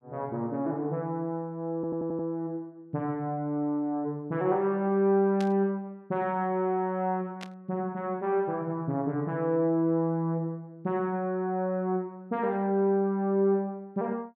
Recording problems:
audio stuttering; at 2 s
burst of static; at 5.5 s and at 7.5 s; peak -7 dB vs average level

